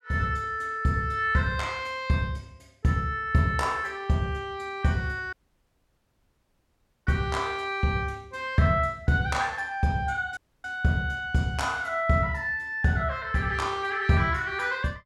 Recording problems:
dropout; at 5.5 s for 1.5 s and at 10 s

